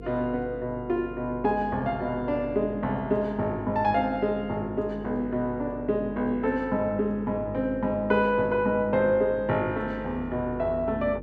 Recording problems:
electrical hum; 50 Hz, harmonics up to 500 Hz, SNR 15 dB

